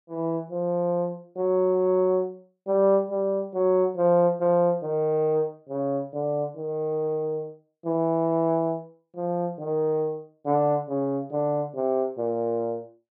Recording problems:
none

